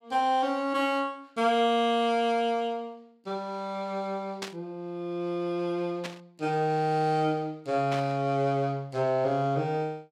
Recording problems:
static burst; at 4.5 s, at 6 s and at 8 s; peak -3 dB vs average level

